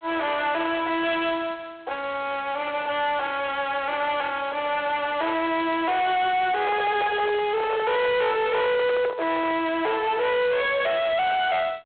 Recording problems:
telephone audio; 990 Hz to 3.9 kHz, G.726
distortion; hard clipping, signal-to-distortion ratio 6 dB
handling noise; from 6.5 to 9.5 s; peak -1 dB vs average level

